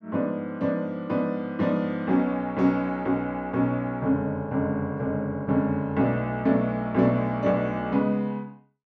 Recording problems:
none

